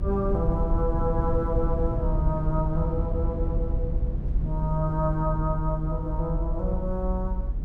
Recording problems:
rumble; below 84 Hz, SNR 0 dB

